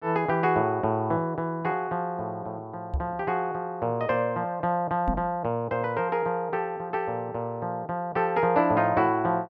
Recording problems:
microphone thump; at 3 s and at 5 s; peak +2 dB vs average level

